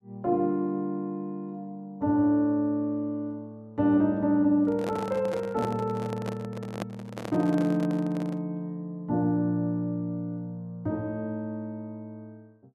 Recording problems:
microphone handling noise; from 4.5 to 8.5 s; peak -2 dB vs average level

